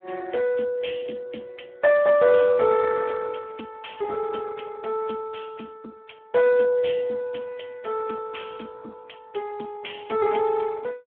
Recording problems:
telephone audio; 260 Hz to 3.2 kHz, Speex

